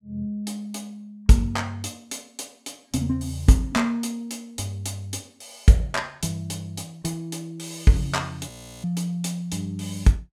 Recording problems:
audio freezing; at 8.5 s

